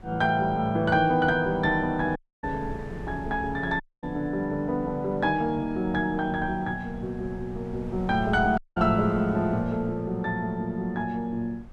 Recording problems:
wind noise; below 140 Hz, SNR 17 dB
audio cutting out; at 2 s, at 4 s and at 8.5 s

